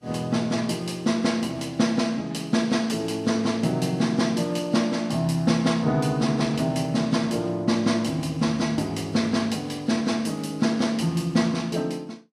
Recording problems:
codec artefacts; Vorbis, log-spectral distance 2 dB, nothing above 12 kHz

